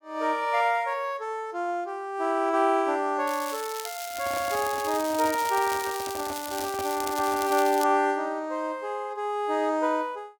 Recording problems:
crackling; from 3.5 to 8 s; loose cable, SNR 10 dB
microphone handling noise; from 4 to 7.5 s; peak -7 dB vs average level

